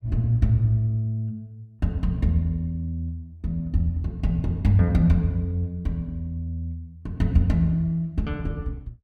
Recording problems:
none

